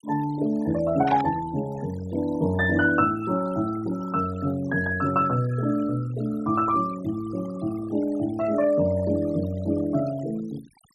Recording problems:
denoising artefacts; signal-to-artefact ratio 18 dB
burst of static; at 1 s; peak -8 dB vs average level

